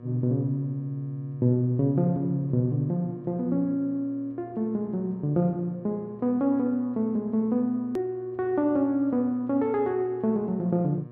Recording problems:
electrical hum; 60 Hz, harmonics up to 1.2 kHz, SNR 19 dB
edit click; at 8 s

